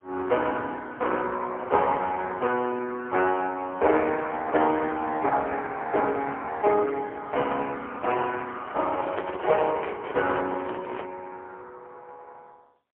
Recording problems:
telephone audio; 320 Hz to 3.4 kHz, AMR-NB, then MP3
microphone handling noise; from 9 to 11 s; peak +1 dB vs average level

